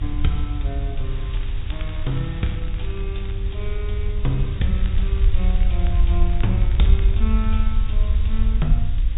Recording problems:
treble missing; nothing above 4 kHz
hum; 50 Hz, harmonics up to 500 Hz, SNR 7 dB
hiss; SNR 15 dB
rumble; below 60 Hz, SNR -6 dB
crackling; from 1.5 to 3.5 s and from 4.5 to 7.5 s; loose cable, SNR 17 dB

